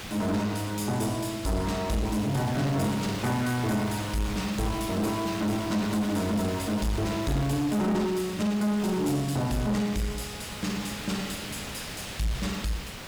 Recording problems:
distorted audio; soft clipping, signal-to-distortion ratio 10 dB
hiss; slope -2 dB per octave, SNR 10 dB

